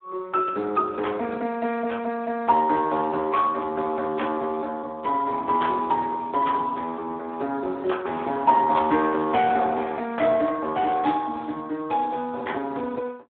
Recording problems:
telephone audio; 220 Hz to 3.5 kHz, Speex

